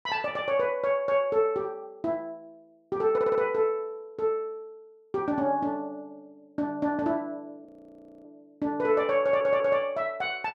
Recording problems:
audio stuttering; at 3 s and at 9 s
frozen audio; at 7.5 s for 0.5 s

